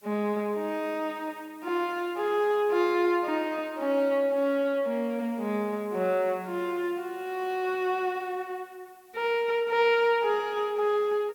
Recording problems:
background hiss; slope 0 dB per octave, SNR 29 dB

